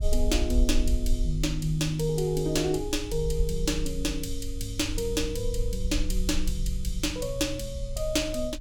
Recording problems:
rumble; below 52 Hz, strongest tone 20 Hz, SNR 5 dB

